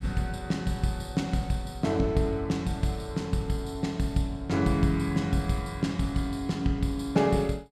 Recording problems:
none

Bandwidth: 13.5 kHz